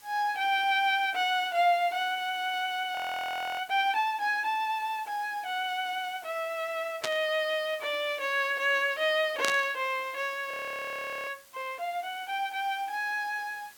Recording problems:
hiss; slope 0 dB per octave, SNR 23 dB
audio freezing; at 3 s for 0.5 s and at 11 s for 1 s
static burst; at 7 s and at 9.5 s; peak +3 dB vs average level

